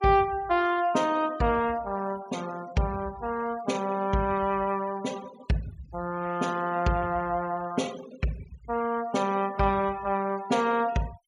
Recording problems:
denoising artefacts; signal-to-artefact ratio 20 dB

